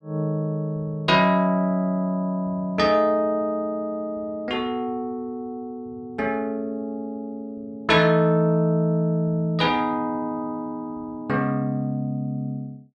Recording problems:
none

